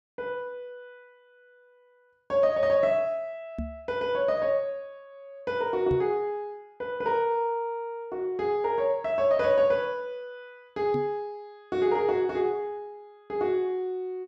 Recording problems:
microphone thump; at 3.5 s, at 6 s and at 11 s; peak -2 dB vs average level

